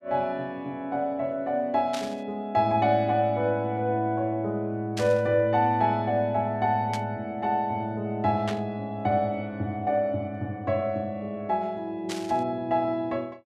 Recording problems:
static burst; 5 times, first at 2 s; peak -4 dB vs average level

